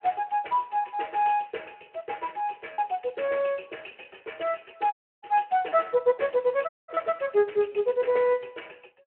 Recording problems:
phone line; 340 Hz to 3.1 kHz, Speex
packet loss; 3% of the sound replaced, filled with repeated pitch periods
dropout; at 5 s and at 6.5 s

